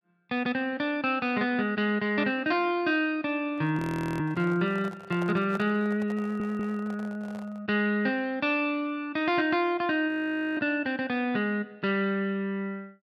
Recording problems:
microphone handling noise; from 3.5 to 7.5 s; peak -9 dB vs average level
frozen audio; at 4 s and at 10 s
stutter; at 6 s

